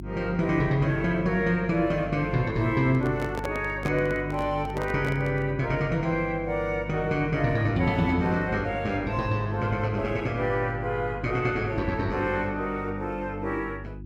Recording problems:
electrical hum; 50 Hz, harmonics up to 350 Hz, SNR 12 dB
handling noise; from 3 to 5.5 s; peak -3 dB vs average level

